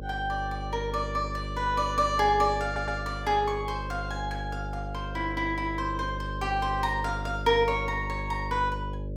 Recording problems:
hum; 50 Hz, harmonics up to 600 Hz, SNR 8 dB
audio stuttering; at 2.5 s

